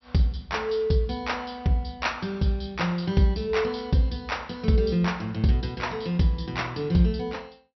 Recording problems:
treble missing; nothing above 5.8 kHz

